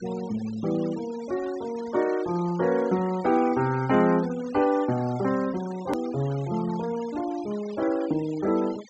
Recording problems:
treble missing; nothing above 8 kHz
denoising artefacts; signal-to-artefact ratio 19 dB
hard cut with a click; at 6 s

